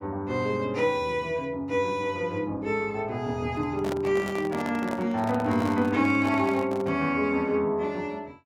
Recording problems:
microphone handling noise; from 3.5 to 7 s; peak -3 dB vs average level

